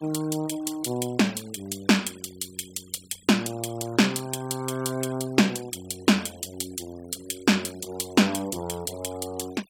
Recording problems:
denoising artefacts; signal-to-artefact ratio 21 dB

